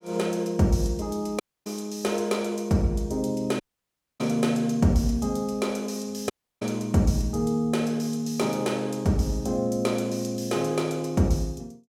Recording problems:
dropout; at 1.5 s, at 3.5 s for 0.5 s and at 6.5 s

